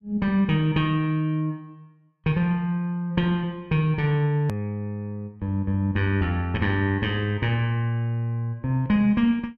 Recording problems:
click at an edit; at 4.5 s

